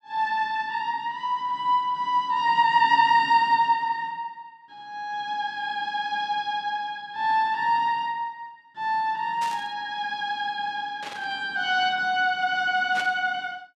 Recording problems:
static burst; at 9.5 s, at 11 s and at 13 s; peak -7 dB vs average level

